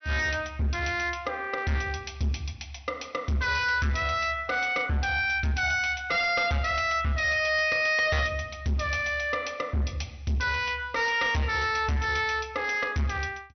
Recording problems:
treble missing; nothing above 6 kHz
distortion; hard clipping, signal-to-distortion ratio 7 dB

